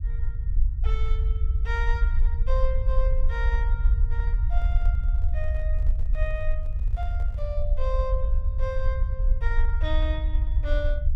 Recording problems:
low-frequency rumble; below 58 Hz, SNR -9 dB
microphone handling noise; from 4.5 to 7.5 s; peak -10 dB vs average level

